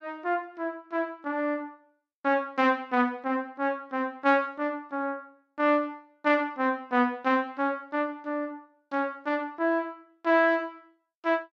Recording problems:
none

